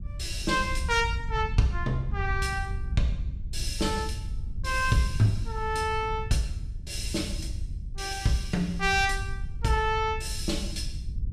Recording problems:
wind on the microphone; below 84 Hz, SNR 6 dB

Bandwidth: 14.5 kHz